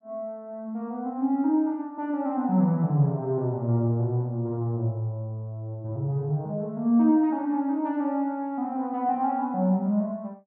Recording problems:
none

